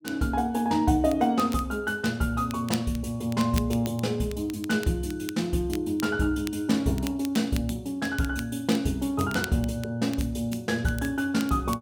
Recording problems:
crackle; vinyl, SNR 16 dB

